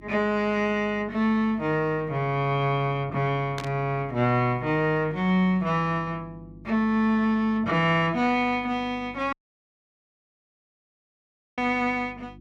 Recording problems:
electrical hum; 50 Hz, harmonics up to 350 Hz, SNR 22 dB
burst of static; at 3.5 s; peak -5 dB vs average level
dropout; at 9.5 s for 2.5 s

